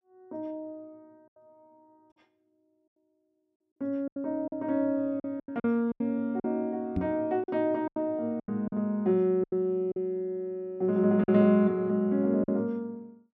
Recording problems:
lost packets; 8% of the sound replaced, filled with silence
knock on the microphone; at 7 s; peak +1 dB vs average level

